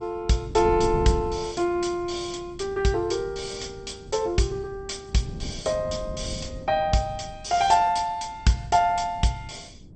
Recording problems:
codec artefacts; MP2, log-spectral distance 5 dB, nothing above 8.2 kHz
wind on the microphone; below 200 Hz, SNR 14 dB

